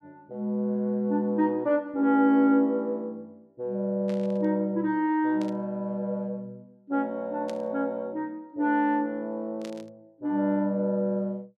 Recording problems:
static burst; 4 times, first at 4 s; peak -13 dB vs average level

